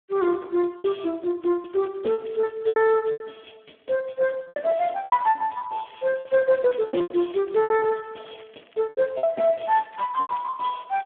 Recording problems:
telephone audio; 240 Hz to 3.4 kHz, Speex
packet loss; 12% of the sound replaced, filled with repeated pitch periods
crackling; from 1.5 to 3 s, from 6 to 7.5 s and from 8 to 10 s; loose cable, SNR 29 dB

